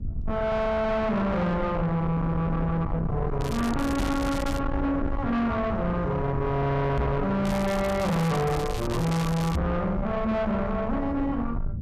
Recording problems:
distortion; soft clipping, signal-to-distortion ratio 6 dB
rumble; below 230 Hz, SNR 6 dB
crackle; from 3.5 to 4.5 s and from 7.5 to 9.5 s; loose cable, SNR 13 dB
microphone bump; at 4 s, at 7 s and at 9.5 s; peak +3 dB vs average level

